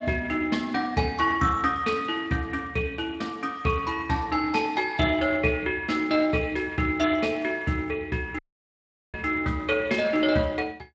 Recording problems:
codec artefacts; Speex, log-spectral distance 4 dB, nothing above 7.3 kHz
audio cutting out; at 8.5 s for 1 s

